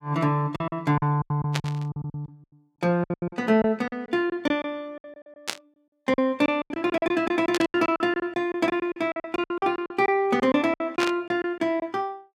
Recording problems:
packet loss; 17% of the sound replaced, filled with silence
burst of static; 4 times, first at 1.5 s; peak +2 dB vs average level

